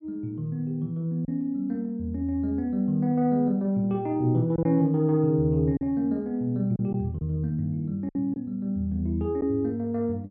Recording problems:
packet loss; 3% of the sound replaced, filled with silence

